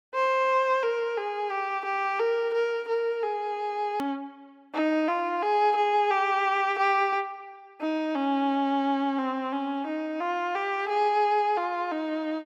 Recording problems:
click at an edit; at 4 s

